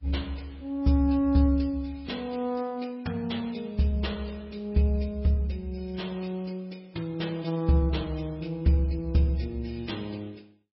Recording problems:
lossy codec; MP3, log-spectral distance 3 dB, nothing above 5.5 kHz

